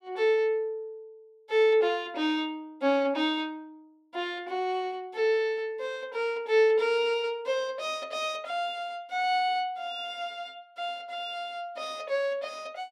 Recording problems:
none

